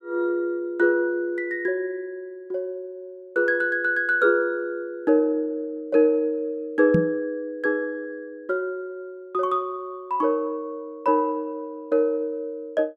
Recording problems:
microphone bump; at 7 s; peak +7 dB vs average level

